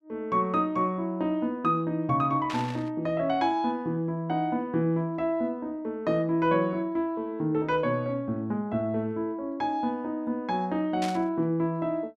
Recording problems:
static burst; at 2.5 s and at 11 s; peak -4 dB vs average level

